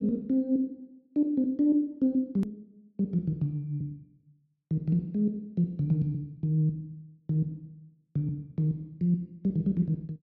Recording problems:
edit click; at 2.5 s

